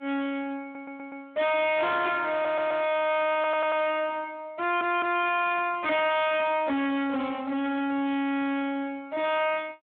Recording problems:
telephone audio; 220 Hz to 3.7 kHz, Speex
distortion; soft clipping, signal-to-distortion ratio 6 dB
stutter; 4 times, first at 0.5 s

